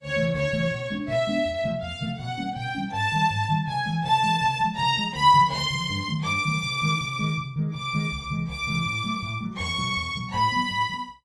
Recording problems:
lossy compression; AAC, log-spectral distance 2 dB, nothing above 11.6 kHz

